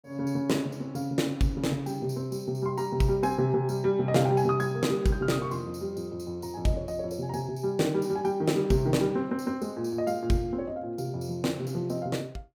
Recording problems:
none

